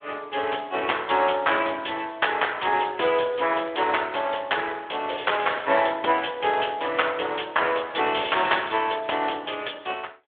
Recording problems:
phone line; 340 Hz to 3.5 kHz, Speex

